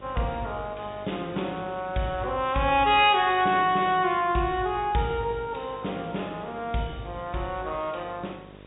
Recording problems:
low-pass filter; nothing above 4 kHz
electrical hum; 50 Hz, harmonics up to 1.3 kHz, SNR 23 dB
background hiss; SNR 27 dB

